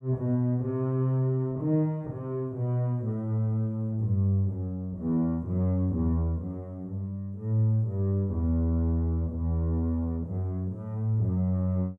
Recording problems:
none

